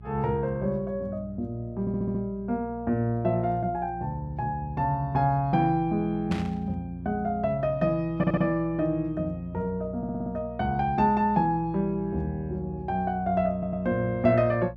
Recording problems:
hum; 60 Hz, harmonics up to 420 Hz, SNR 16 dB
audio stuttering; 4 times, first at 2 s
burst of static; at 6.5 s; peak -6 dB vs average level

